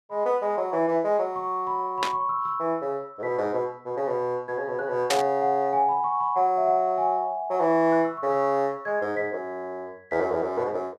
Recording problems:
burst of static; at 2 s and at 5 s; peak +4 dB vs average level

